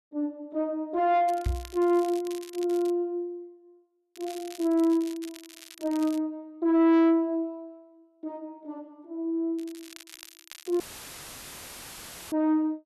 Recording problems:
distorted audio; soft clipping, signal-to-distortion ratio 10 dB
crackle; from 1.5 to 3 s, from 4 to 6 s and from 9.5 to 11 s; loose cable, SNR 20 dB
knock on the microphone; at 1.5 s; peak +1 dB vs average level
dropout; at 11 s for 1.5 s; filled with static

